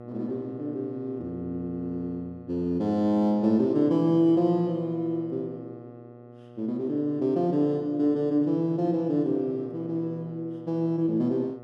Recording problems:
hum; 60 Hz, harmonics up to 1.4 kHz, SNR 18 dB

